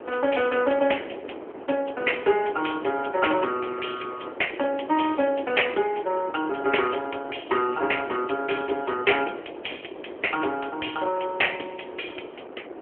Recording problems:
phone line; 280 Hz to 3.2 kHz, AMR-NB
wind noise; below 650 Hz, SNR 13 dB

